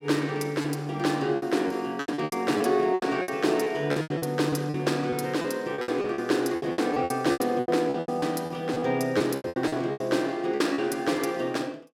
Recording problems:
lost packets; 16% of the sound replaced, filled with repeated pitch periods

